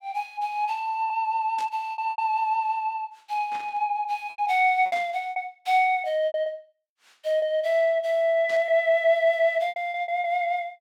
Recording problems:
packet loss; 8% of the sound replaced, filled with repeated pitch periods
burst of static; 4 times, first at 1.5 s; peak -12 dB vs average level

